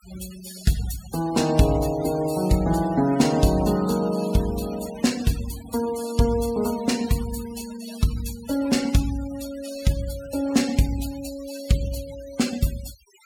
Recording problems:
noise reduction artefacts; signal-to-artefact ratio 16 dB

